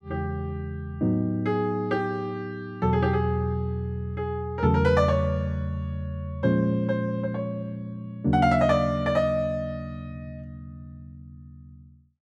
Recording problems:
none

